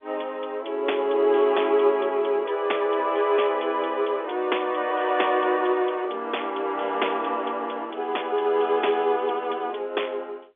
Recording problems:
telephone audio; 300 Hz to 3.5 kHz, G.711

